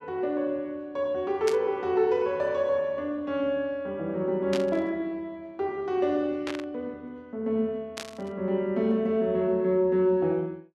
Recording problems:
static burst; 4 times, first at 1.5 s; peak -3 dB vs average level

